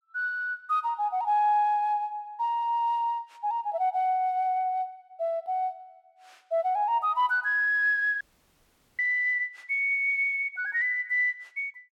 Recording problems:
dropout; at 8 s for 1 s

